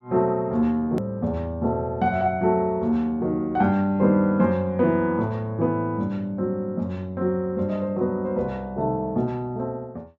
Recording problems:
treble missing; nothing above 8 kHz
hard cut with a click; at 1 s

